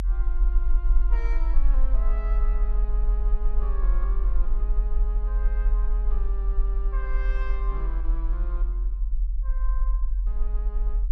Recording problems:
rumble; below 44 Hz, SNR -15 dB

